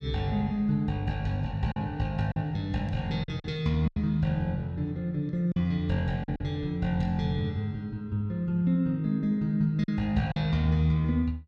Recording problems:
packet loss; 4% of the sound replaced, filled with silence

